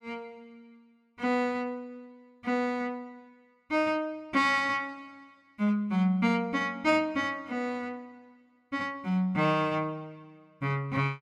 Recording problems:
none

